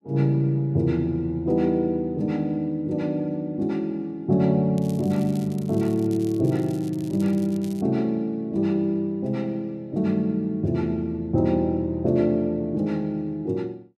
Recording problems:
crackling; from 5 to 8 s; loose cable, SNR 24 dB

